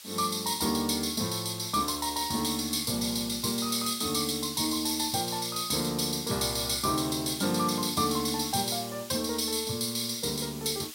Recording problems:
background hiss; slope +4 dB per octave, SNR 14 dB

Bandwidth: 16 kHz